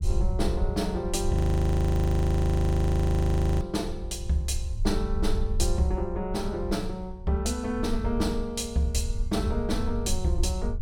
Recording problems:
low-frequency rumble; below 74 Hz, SNR 4 dB
audio freezing; at 1.5 s for 2.5 s

